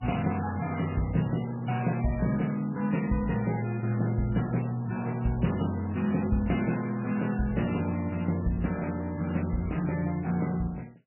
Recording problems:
lossy compression; MP3, log-spectral distance 5 dB, nothing above 2.9 kHz

